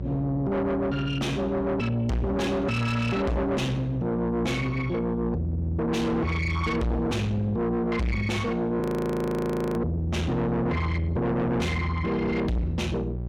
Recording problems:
distortion; soft clipping, signal-to-distortion ratio 5 dB
hum; 60 Hz, harmonics up to 600 Hz, SNR 10 dB
audio freezing; at 9 s for 1 s

